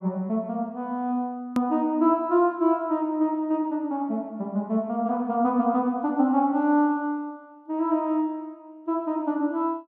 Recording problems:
click at an edit; at 1.5 s

